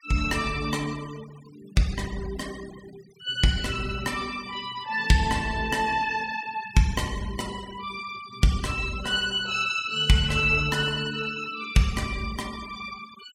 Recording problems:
noise reduction artefacts; signal-to-artefact ratio 18 dB

